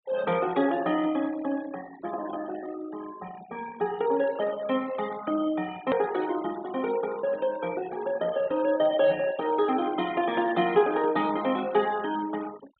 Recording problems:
treble missing; nothing above 4 kHz
noise reduction artefacts; signal-to-artefact ratio 17 dB
edit click; at 6 s

